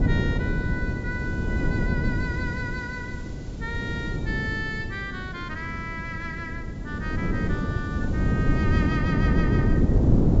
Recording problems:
treble cut off; nothing above 8 kHz
background hiss; slope -2 dB per octave, SNR 20 dB
wind noise; below 240 Hz, SNR -7 dB

